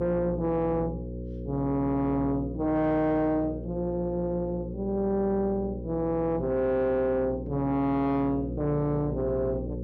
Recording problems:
distorted audio; soft clipping, signal-to-distortion ratio 10 dB
electrical hum; 60 Hz, harmonics up to 540 Hz, SNR 9 dB

